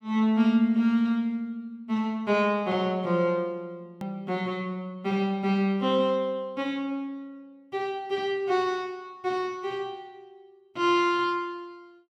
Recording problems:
edit click; at 4 s

